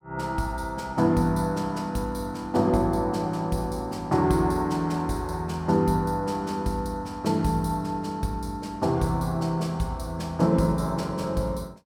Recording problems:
none

